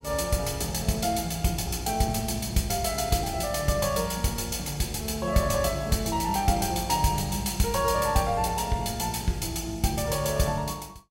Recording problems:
none

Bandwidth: 16 kHz